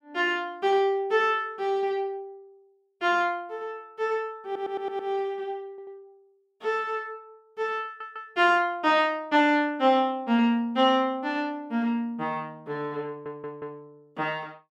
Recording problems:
audio stuttering; 4 times, first at 4.5 s

